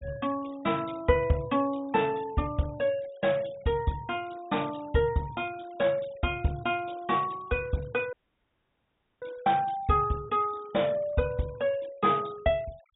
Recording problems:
low-pass filter; nothing above 4 kHz
denoising artefacts; signal-to-artefact ratio 24 dB
audio cutting out; at 8 s for 1 s

